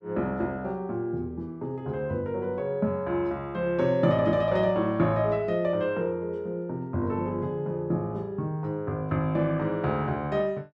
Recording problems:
none

